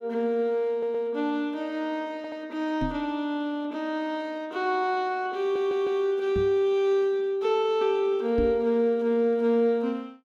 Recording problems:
stutter; at 0.5 s, at 2 s and at 5.5 s
microphone thump; at 3 s, at 6.5 s and at 8.5 s; peak -1 dB vs average level

